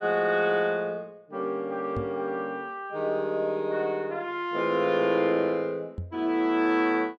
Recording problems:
knock on the microphone; at 2 s and at 6 s; peak -2 dB vs average level

